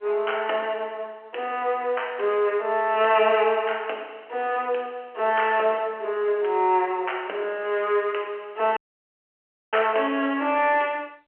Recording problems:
phone line; 340 Hz to 3.2 kHz, G.711
dropout; at 9 s for 1 s

